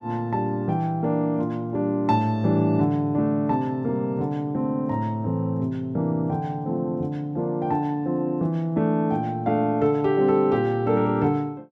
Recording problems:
none

